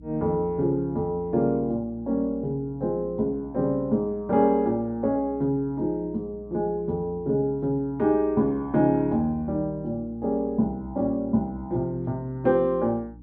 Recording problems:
hum; 60 Hz, harmonics up to 300 Hz, SNR 21 dB

